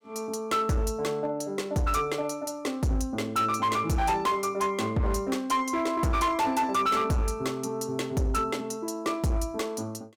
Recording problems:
distorted audio; hard clipping, uneven, signal-to-distortion ratio 11 dB

